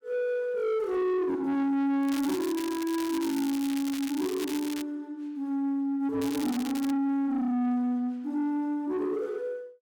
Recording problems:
distorted audio; soft clipping, signal-to-distortion ratio 10 dB
crackle; from 2 to 5 s and at 6 s; loose cable, SNR 11 dB

